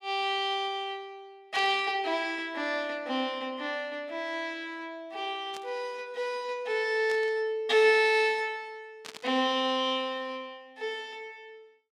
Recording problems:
burst of static; 4 times, first at 1.5 s; peak -8 dB vs average level

